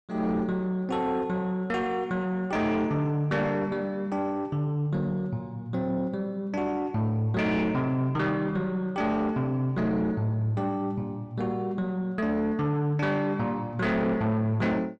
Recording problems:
distorted audio; soft clipping, signal-to-distortion ratio 10 dB

